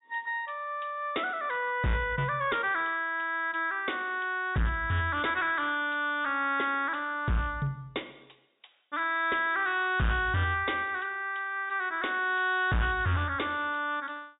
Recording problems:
low-pass filter; nothing above 4 kHz
distortion; hard clipping, signal-to-distortion ratio 11 dB

